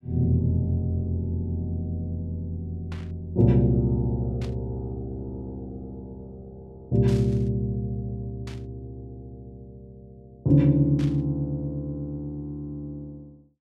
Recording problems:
static burst; 5 times, first at 3 s; peak -13 dB vs average level

